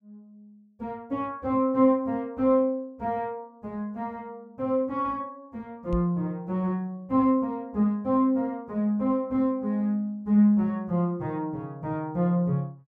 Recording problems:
microphone bump; at 6 s; peak -2 dB vs average level

